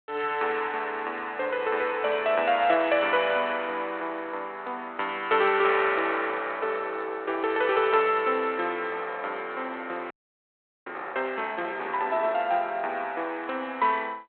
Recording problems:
phone line; 280 Hz to 3.5 kHz, G.726
frozen audio; at 10 s for 1 s

